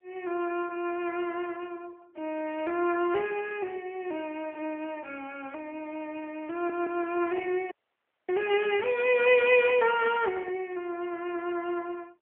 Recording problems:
phone line; 300 Hz to 3.2 kHz, AMR-NB
audio stuttering; at 6.5 s
audio cutting out; at 7.5 s for 0.5 s

